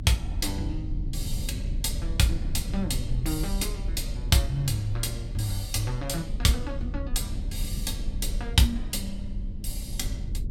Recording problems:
rumble; below 80 Hz, SNR 5 dB

